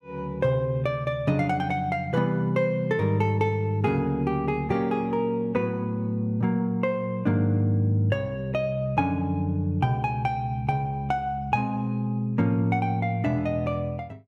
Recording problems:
none

